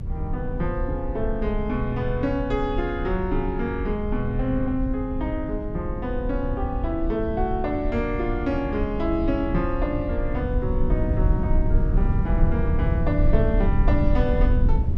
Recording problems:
low-frequency rumble; below 88 Hz, SNR 0 dB

